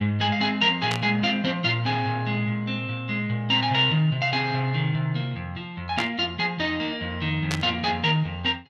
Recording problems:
static burst; at 1 s, at 6 s and at 7.5 s; peak 0 dB vs average level

